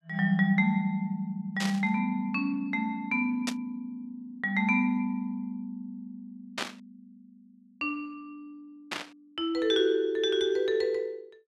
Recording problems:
static burst; 4 times, first at 1.5 s; peak +1 dB vs average level

